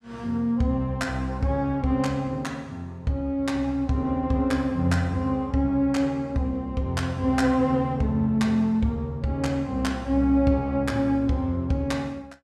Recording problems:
none

